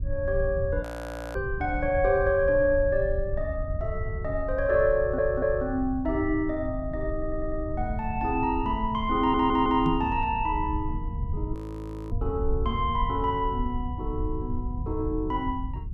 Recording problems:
rumble; below 88 Hz, SNR 7 dB
frozen audio; at 1 s for 0.5 s and at 12 s for 0.5 s
audio stuttering; at 5 s, at 7 s and at 9 s
knock on the microphone; at 10 s; peak +1 dB vs average level

